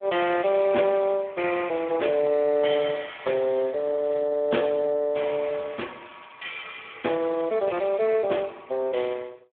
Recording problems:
phone line; 260 Hz to 3.6 kHz, Speex
crackle; at 3 s, at 4 s and from 6 to 8 s; loose cable, SNR 27 dB

